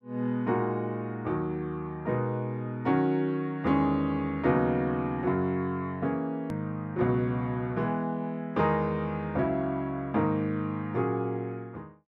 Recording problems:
edit click; at 6.5 s

